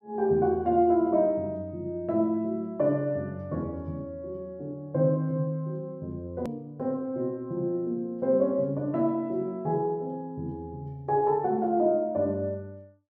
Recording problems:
hard cut with a click; at 6.5 s

